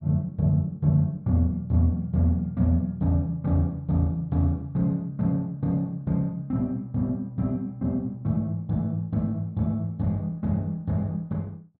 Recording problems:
none

